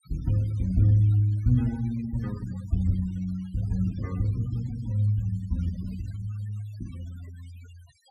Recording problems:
noise reduction artefacts; signal-to-artefact ratio 25 dB

